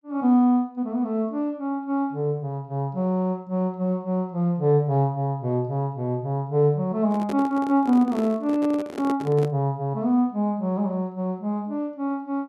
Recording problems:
handling noise; from 7 to 9.5 s; peak -3 dB vs average level

